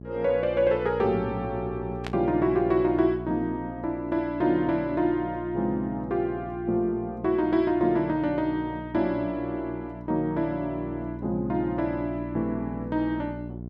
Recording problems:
hum; 60 Hz, harmonics up to 720 Hz, SNR 12 dB
static burst; at 2 s; peak -5 dB vs average level

